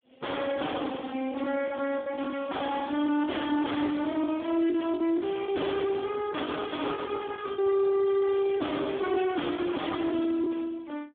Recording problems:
phone line; 220 Hz to 3.4 kHz, Speex
distorted audio; soft clipping, signal-to-distortion ratio 7 dB
packet loss; 12% of the sound replaced, filled with the last packet
crackle; from 6 to 7.5 s and from 7.5 to 10 s; loose cable, SNR 29 dB

